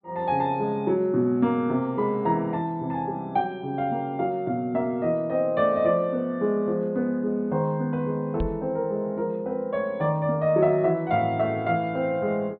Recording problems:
low-pass filter; nothing above 4.5 kHz
microphone bump; at 8.5 s; peak -1 dB vs average level

